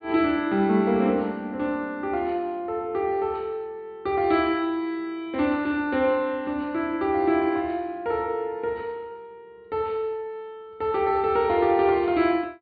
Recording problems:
low-pass filter; nothing above 4.5 kHz

